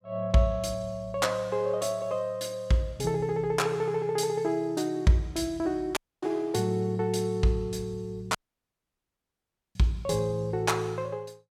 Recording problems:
audio cutting out; at 6 s and at 8.5 s for 1.5 s

